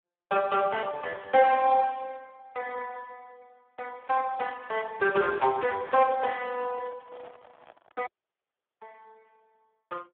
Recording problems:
telephone audio; 280 Hz to 2.8 kHz, Speex
microphone handling noise; from 4.5 to 8 s; peak -15 dB vs average level
dropout; at 8 s for 1 s

